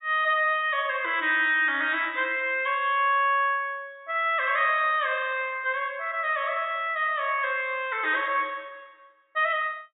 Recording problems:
treble cut off; nothing above 4 kHz

